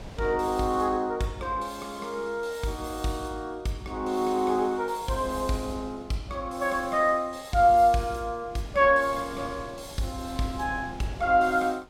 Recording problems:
wind on the microphone; below 680 Hz, SNR 21 dB

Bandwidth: 16.5 kHz